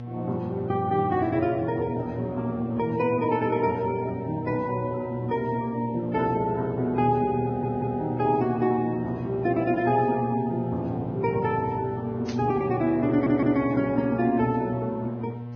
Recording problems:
codec artefacts; Vorbis, log-spectral distance 2 dB, nothing above 5.3 kHz
mains hum; 60 Hz, harmonics up to 840 Hz, SNR 10 dB
audio stuttering; at 7.5 s and at 13 s
burst of static; at 12 s; peak -9 dB vs average level

